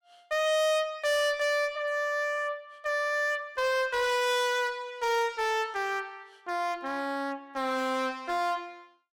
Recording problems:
distortion; hard clipping, signal-to-distortion ratio 6 dB

